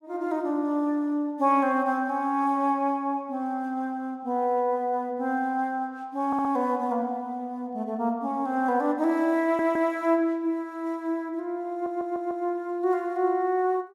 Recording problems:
stutter; at 6.5 s, at 9.5 s and at 12 s

